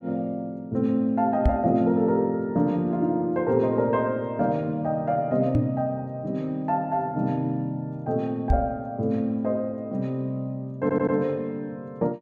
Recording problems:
microphone bump; at 1.5 s, at 5.5 s and at 8.5 s; peak +7 dB vs average level
stutter; at 11 s

